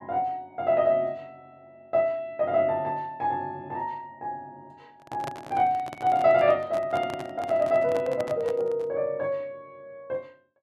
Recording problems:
microphone handling noise; from 5 to 9 s; peak -5 dB vs average level

